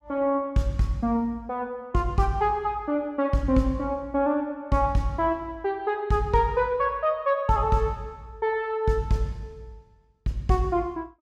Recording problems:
none

